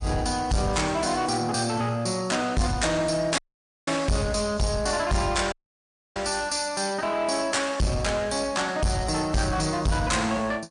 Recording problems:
lossy compression; MP3, log-spectral distance 7 dB, nothing above 9.5 kHz
distortion; soft clipping, signal-to-distortion ratio 7 dB
audio cutting out; at 3.5 s and at 5.5 s for 0.5 s

